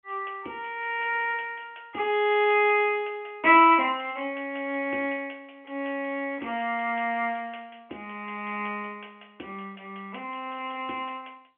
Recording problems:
telephone audio; 260 Hz to 3.3 kHz, G.711

